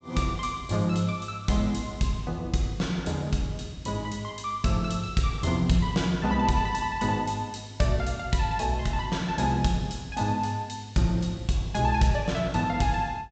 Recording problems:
treble cut off; nothing above 8 kHz

